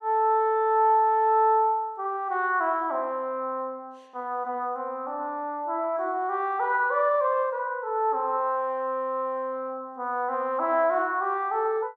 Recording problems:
none

